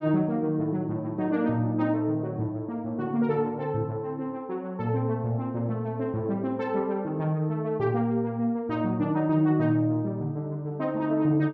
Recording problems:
none

